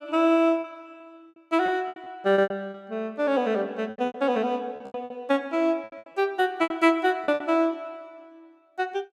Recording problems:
lost packets; 13% of the sound replaced, filled with repeated pitch periods

